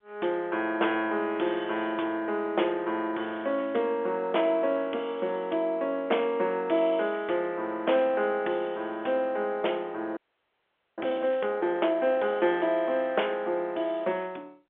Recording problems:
telephone audio; 300 Hz to 3.4 kHz, G.711
audio freezing; at 10 s for 1 s

